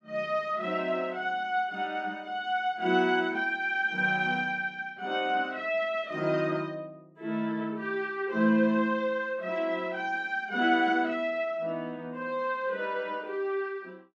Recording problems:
none

